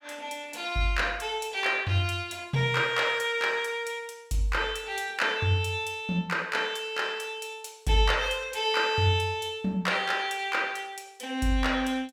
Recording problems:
none

